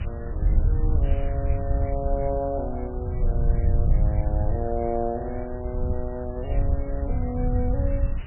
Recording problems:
codec artefacts; MP3, log-spectral distance 6 dB
background hiss; SNR 15 dB
wind on the microphone; below 80 Hz, SNR -5 dB

